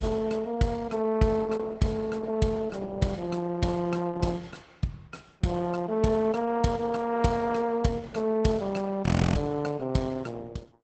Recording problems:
lossy compression; Opus, log-spectral distance 3 dB, nothing above 8.2 kHz
frozen audio; at 9 s

